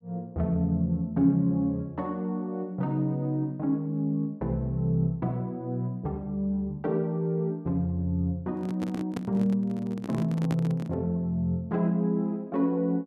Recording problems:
microphone handling noise; from 8.5 to 11 s; peak 0 dB vs average level

